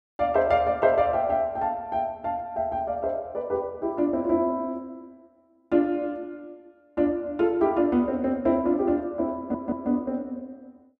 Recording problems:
stutter; at 9.5 s

